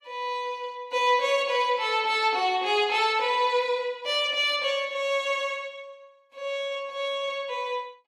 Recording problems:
codec artefacts; AAC, log-spectral distance 2 dB, nothing above 14.7 kHz

